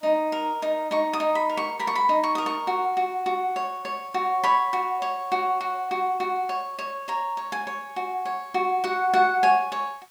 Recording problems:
background hiss; SNR 30 dB

